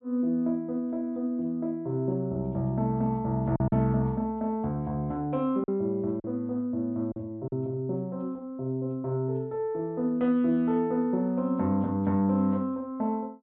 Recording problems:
treble cut off; nothing above 4 kHz
packet loss; 1.8% of the sound replaced, filled with silence

